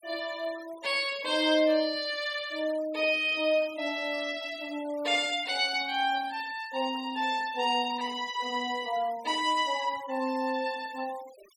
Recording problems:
noise reduction artefacts; signal-to-artefact ratio 20 dB

